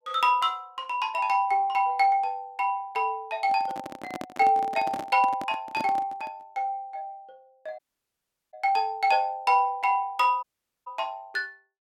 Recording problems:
handling noise; from 3.5 to 6.5 s; peak -5 dB vs average level
audio cutting out; at 8 s for 0.5 s and at 10 s

